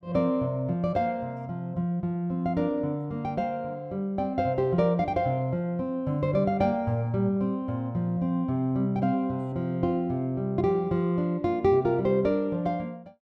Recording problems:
none

